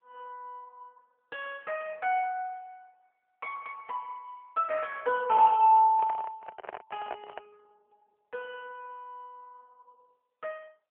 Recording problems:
telephone audio; 300 Hz to 3.1 kHz, AMR-NB
handling noise; from 6 to 7.5 s; peak -5 dB vs average level

